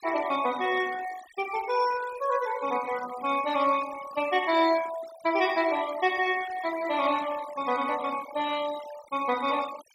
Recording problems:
noise reduction artefacts; signal-to-artefact ratio 15 dB

